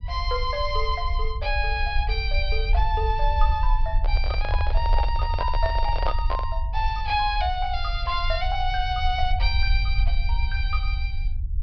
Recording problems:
treble cut off; nothing above 5.5 kHz
rumble; below 60 Hz, SNR 0 dB
microphone handling noise; from 4 to 6.5 s; peak +2 dB vs average level

